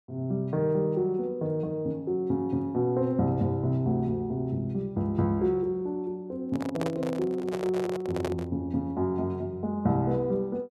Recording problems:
microphone handling noise; from 6.5 to 8.5 s; peak 0 dB vs average level

